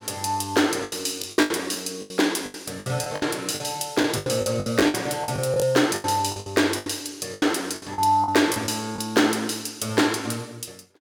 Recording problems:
lost packets; 14% of the sound replaced, filled with the last packet

